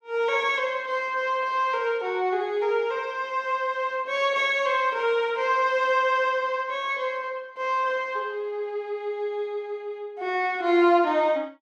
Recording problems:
none

